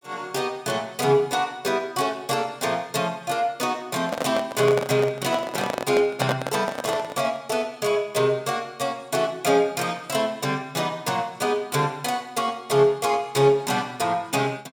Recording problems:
microphone handling noise; from 4 to 7.5 s; peak +3 dB vs average level

